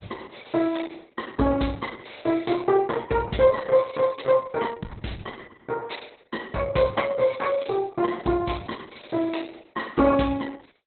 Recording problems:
codec artefacts; Opus, log-spectral distance 6 dB, nothing above 4.1 kHz

